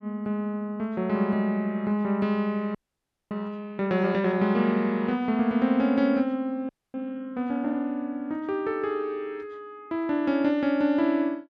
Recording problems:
frozen audio; at 3 s for 0.5 s and at 6.5 s

